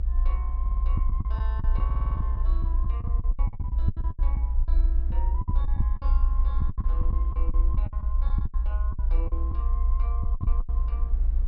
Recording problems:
low-pass filter; nothing above 5.5 kHz
low-frequency rumble; below 58 Hz, strongest tone 30 Hz, SNR -16 dB
wind on the microphone; below 120 Hz, SNR 4 dB
lost packets; 15% of the sound replaced, filled with the last packet
audio stuttering; at 0.5 s and at 2 s

